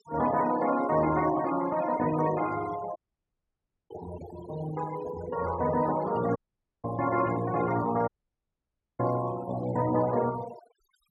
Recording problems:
denoising artefacts; signal-to-artefact ratio 14 dB
dropout; at 3 s for 1 s, at 6.5 s and at 8 s for 1 s

